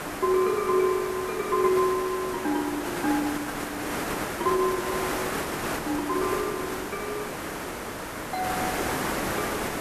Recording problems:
background hiss; SNR 3 dB

